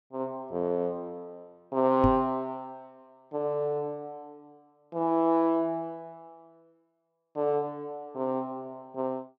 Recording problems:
knock on the microphone; at 2 s; peak +6 dB vs average level

